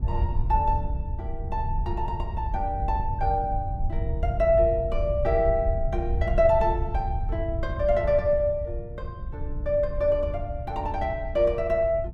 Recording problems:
wind noise; below 84 Hz, SNR 5 dB

